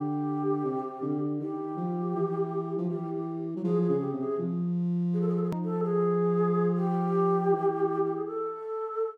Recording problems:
edit click; at 5.5 s

